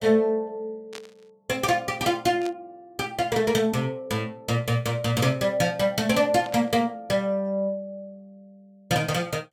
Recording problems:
burst of static; at 1 s, at 2.5 s and at 6.5 s; peak -10 dB vs average level

